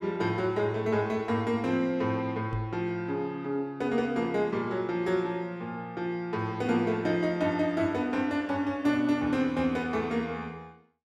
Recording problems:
microphone bump; at 2.5 s; peak -2 dB vs average level

